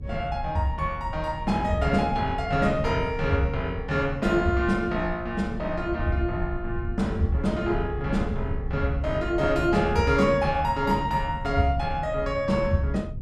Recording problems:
low-frequency rumble; below 110 Hz, SNR 10 dB

